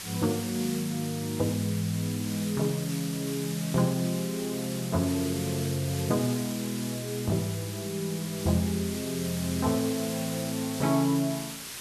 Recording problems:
background hiss; slope +1 dB per octave, SNR 8 dB

